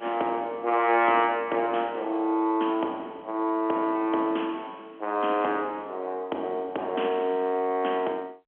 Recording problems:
telephone audio; 240 Hz to 3.3 kHz, G.711

